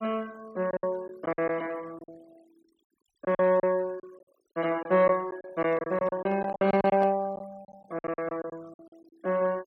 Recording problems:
noise reduction artefacts; signal-to-artefact ratio 26 dB
packet loss; 12% of the sound replaced, filled with silence
handling noise; from 5.5 to 7 s; peak -5 dB vs average level

